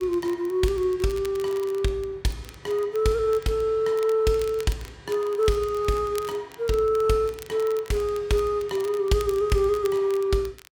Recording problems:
crackle; vinyl, SNR 21 dB

